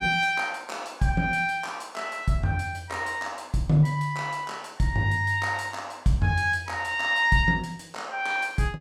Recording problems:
none

